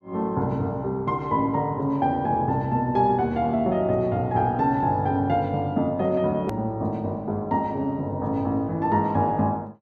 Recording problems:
hard cut with a click; at 6.5 s

